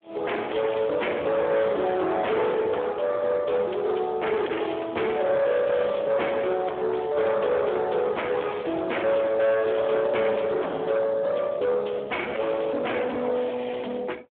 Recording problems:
phone line; 300 Hz to 3.4 kHz, Speex
distortion; soft clipping, signal-to-distortion ratio 7 dB

